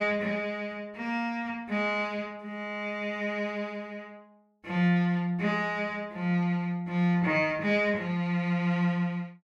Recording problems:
none

